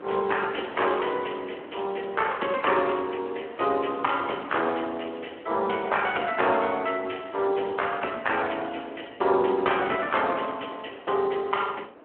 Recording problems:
telephone audio; 240 Hz to 3.2 kHz, Speex
wind on the microphone; below 980 Hz, SNR 19 dB

